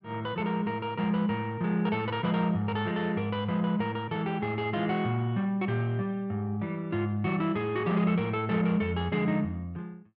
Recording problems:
none

